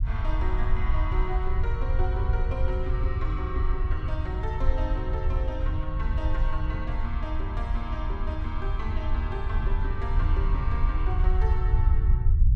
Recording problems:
rumble; below 70 Hz, SNR -7 dB

